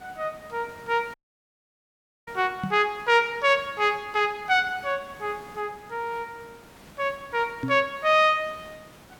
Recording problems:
hiss; slope -5 dB per octave, SNR 24 dB
dropout; at 1 s for 1 s
microphone thump; at 2.5 s and at 7.5 s; peak -1 dB vs average level

